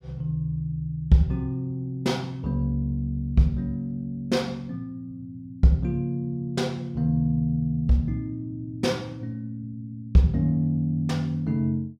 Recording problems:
none

